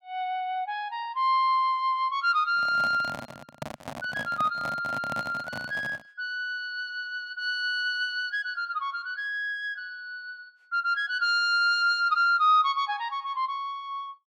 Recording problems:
handling noise; from 2.5 to 6 s; peak -4 dB vs average level

